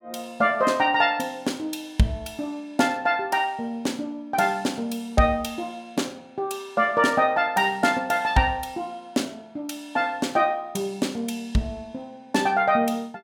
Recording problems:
none

